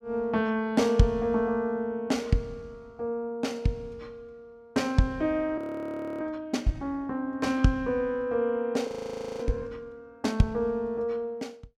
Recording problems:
frozen audio; at 5.5 s for 0.5 s and at 9 s for 0.5 s

